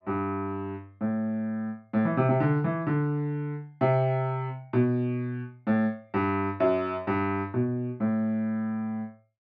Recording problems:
none

